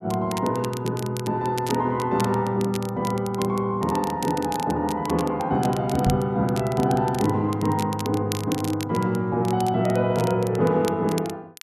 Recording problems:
crackle; vinyl, SNR 15 dB
knock on the microphone; at 6 s; peak +4 dB vs average level

